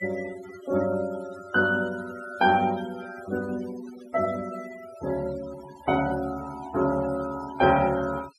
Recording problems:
denoising artefacts; signal-to-artefact ratio 16 dB

